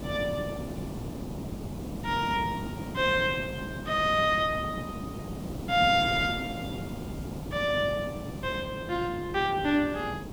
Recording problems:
mains hum; 50 Hz, harmonics up to 350 Hz, SNR 19 dB
hiss; SNR 10 dB
wind on the microphone; below 430 Hz, SNR 16 dB

